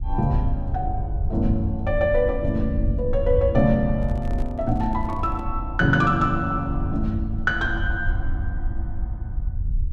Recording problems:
rumble; below 74 Hz, SNR 5 dB
handling noise; from 4 to 5.5 s; peak -11 dB vs average level

